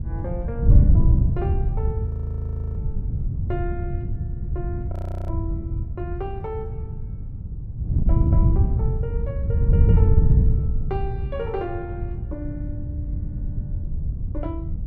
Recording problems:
wind noise; below 110 Hz, SNR -10 dB
frozen audio; at 2 s for 0.5 s and at 5 s

